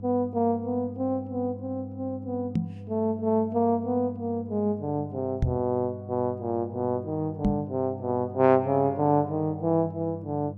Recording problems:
electrical hum; 50 Hz, harmonics up to 500 Hz, SNR 14 dB
microphone bump; at 2.5 s, at 5.5 s and at 7.5 s; peak +6 dB vs average level

